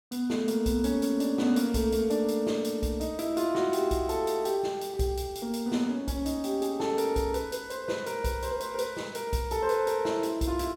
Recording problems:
none

